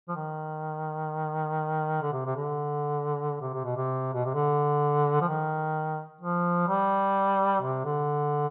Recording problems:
low-pass filter; nothing above 3.9 kHz

